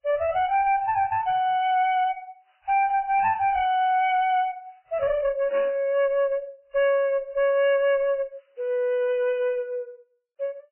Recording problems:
codec artefacts; MP3, then AAC, log-spectral distance 2 dB, nothing above 3 kHz
distortion; hard clipping, uneven, signal-to-distortion ratio 8 dB
static burst; at 5.5 s; peak -11 dB vs average level

